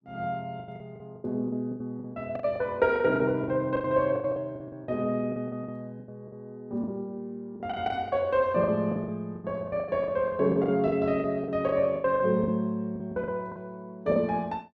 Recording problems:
packet loss; 17% of the sound replaced, filled with the last packet

